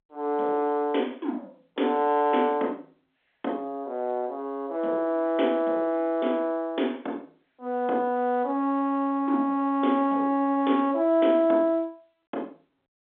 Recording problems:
phone line; 220 Hz to 3.6 kHz, G.711

